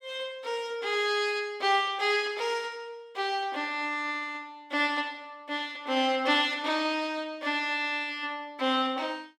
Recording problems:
none

